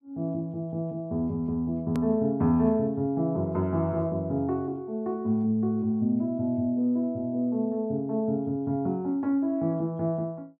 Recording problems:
edit click; at 2 s

